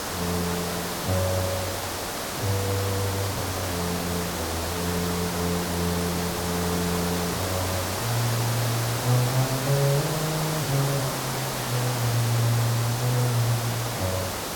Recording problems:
background hiss; slope -4 dB per octave, SNR 1 dB

